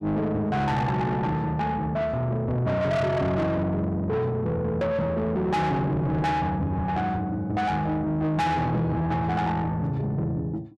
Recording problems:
distorted audio; soft clipping, signal-to-distortion ratio 8 dB

